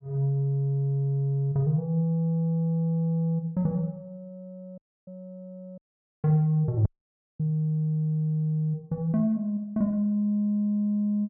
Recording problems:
audio cutting out; at 5 s, at 6 s and at 7 s for 0.5 s

